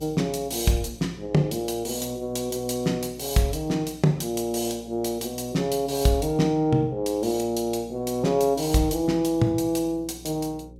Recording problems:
mains hum; 60 Hz, harmonics up to 540 Hz, SNR 23 dB

